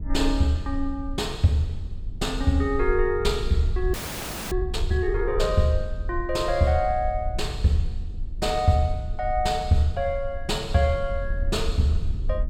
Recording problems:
low-frequency rumble; below 58 Hz, SNR 7 dB
audio freezing; at 4 s for 0.5 s

